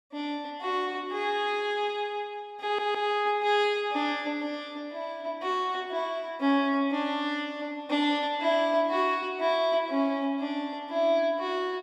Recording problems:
audio stuttering; at 2.5 s

